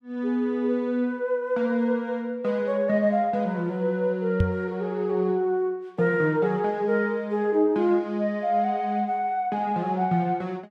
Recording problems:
microphone thump; at 4.5 s; peak +5 dB vs average level

